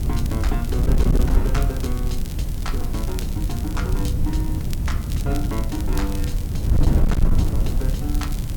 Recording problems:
distorted audio; hard clipping, signal-to-distortion ratio 12 dB
background hiss; slope -2 dB per octave, SNR 12 dB
low-frequency rumble; below 110 Hz, SNR -2 dB
wind on the microphone; below 88 Hz, SNR -6 dB
crackle; vinyl, SNR 10 dB

